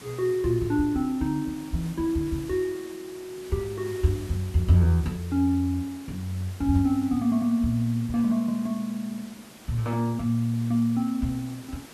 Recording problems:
hiss; slope -3 dB per octave, SNR 20 dB

